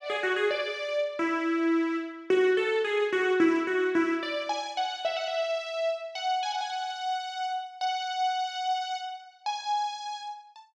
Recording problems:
none

